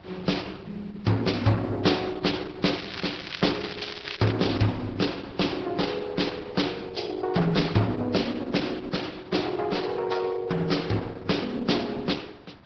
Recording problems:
lossy codec; Vorbis, then Opus, log-spectral distance 7 dB, nothing above 5.5 kHz
wind noise; below 1.3 kHz, SNR 23 dB
crackle; from 3 to 4.5 s; loose cable, SNR 10 dB

